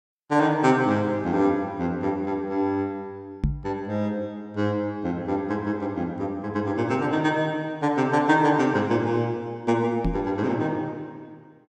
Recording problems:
knock on the microphone; at 3.5 s and at 10 s; peak +4 dB vs average level

